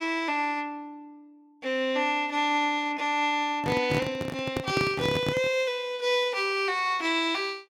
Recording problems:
microphone handling noise; from 3.5 to 5.5 s; peak +1 dB vs average level

